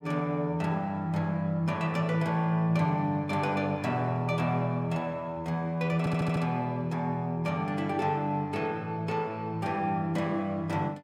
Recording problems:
stutter; at 6 s

